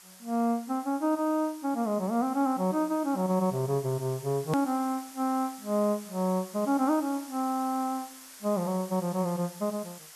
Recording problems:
hiss; SNR 17 dB
edit click; at 4.5 s

